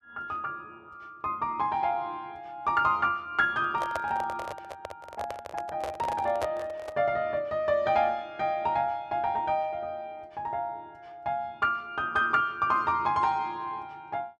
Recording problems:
handling noise; from 3.5 to 7 s; peak 0 dB vs average level

